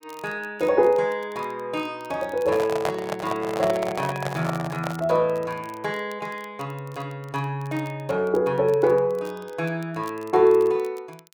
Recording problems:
crackle; vinyl, SNR 27 dB
handling noise; from 2.5 to 5 s; peak +2 dB vs average level

